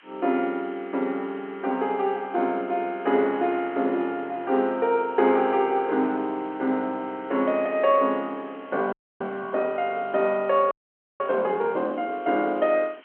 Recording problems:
phone line; 220 Hz to 3.4 kHz, G.711
hiss; SNR 28 dB
frozen audio; at 9 s and at 11 s

